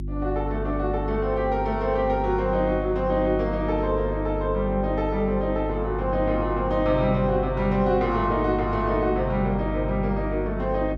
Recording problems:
hum; 50 Hz, harmonics up to 350 Hz, SNR 7 dB

